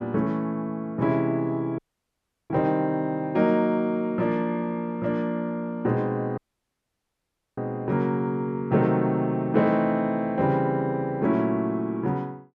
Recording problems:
audio cutting out; at 2 s for 0.5 s and at 6.5 s for 1 s

